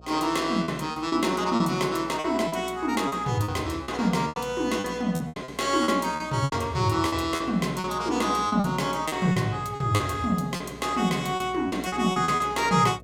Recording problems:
hum; 60 Hz, harmonics up to 720 Hz, SNR 22 dB
lost packets; 11% of the sound replaced, filled with repeated pitch periods

